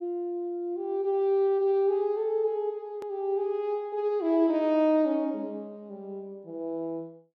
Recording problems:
hard cut with a click; at 3 s

